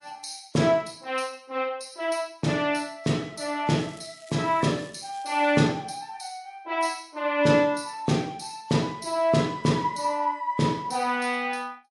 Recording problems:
lossy compression; MP3, log-spectral distance 3 dB, nothing above 11 kHz
crackle; from 4 to 5.5 s; loose cable, SNR 25 dB

